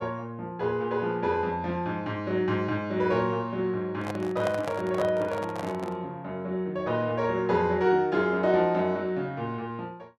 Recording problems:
microphone handling noise; from 4 to 6 s; peak -1 dB vs average level

